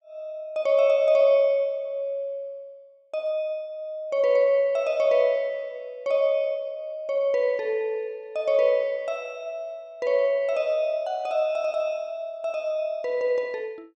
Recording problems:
none

